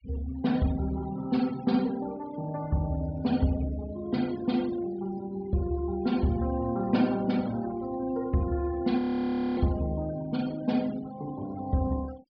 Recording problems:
low-pass filter; nothing above 5.5 kHz
denoising artefacts; signal-to-artefact ratio 21 dB
audio freezing; at 9 s for 0.5 s

